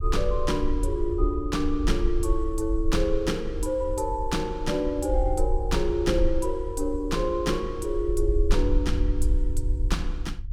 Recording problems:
low-frequency rumble; below 54 Hz, SNR 3 dB

